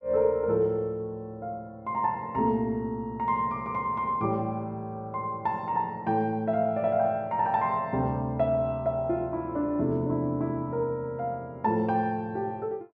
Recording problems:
none

